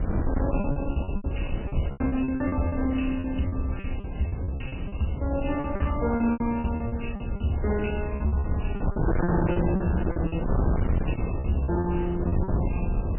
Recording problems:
codec artefacts; MP3, log-spectral distance 5 dB, nothing above 2.7 kHz
distorted audio; hard clipping, uneven, signal-to-distortion ratio 7 dB
wind on the microphone; below 220 Hz, SNR 2 dB
lost packets; 15% of the sound replaced, filled with repeated pitch periods

